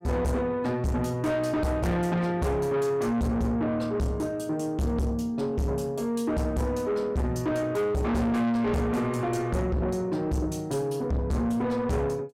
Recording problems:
distortion; soft clipping, signal-to-distortion ratio 6 dB

